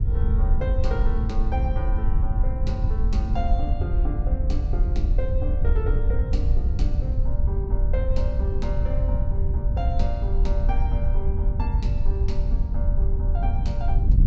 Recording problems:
low-pass filter; nothing above 8 kHz
wind on the microphone; below 70 Hz, SNR -9 dB

